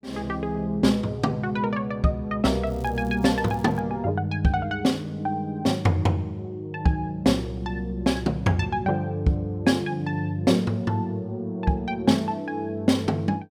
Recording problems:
crackle; from 2.5 to 4 s; loose cable, SNR 28 dB

